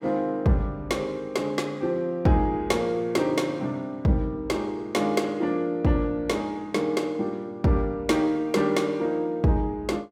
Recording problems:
none

